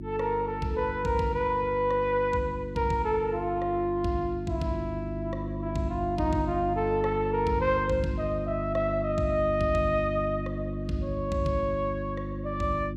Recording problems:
electrical hum; 50 Hz, harmonics up to 350 Hz, SNR 6 dB

